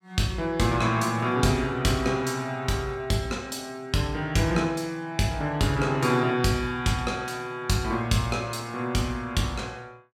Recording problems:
none

